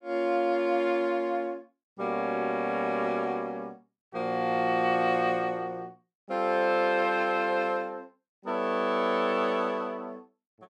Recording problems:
none

